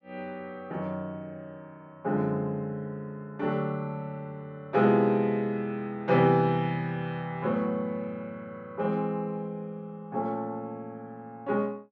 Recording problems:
none

